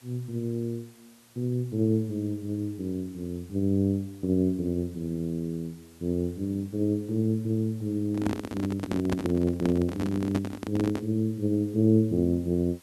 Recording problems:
hiss; slope -1 dB per octave, SNR 27 dB
handling noise; from 8 to 11 s; peak +2 dB vs average level

